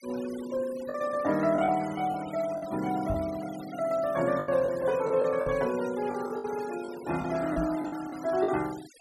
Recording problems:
noise reduction artefacts; signal-to-artefact ratio 18 dB
lost packets; 7% of the sound replaced, filled with the last packet
knock on the microphone; at 3 s, at 5.5 s and at 7.5 s; peak -2 dB vs average level

